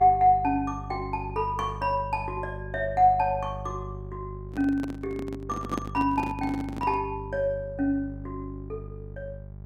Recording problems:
hum; 50 Hz, harmonics up to 600 Hz, SNR 12 dB
microphone handling noise; from 4.5 to 7 s; peak -1 dB vs average level

